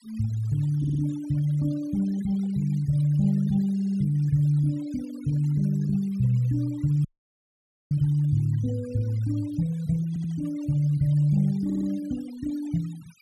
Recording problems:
noise reduction artefacts; signal-to-artefact ratio 25 dB
stutter; 4 times, first at 1 s
dropout; at 7 s for 1 s

